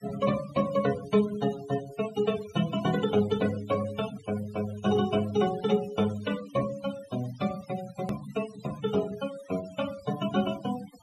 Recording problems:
noise reduction artefacts; signal-to-artefact ratio 15 dB
hard cut with a click; at 8 s

